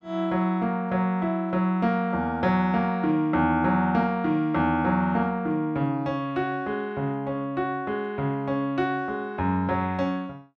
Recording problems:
none

